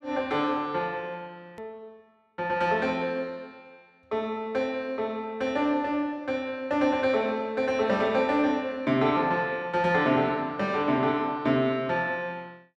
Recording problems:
hard cut with a click; at 1.5 s

